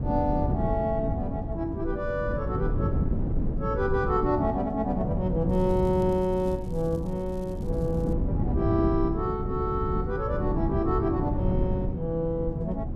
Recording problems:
wind on the microphone; below 200 Hz, SNR 2 dB
crackling; from 5.5 to 8 s; loose cable, SNR 29 dB

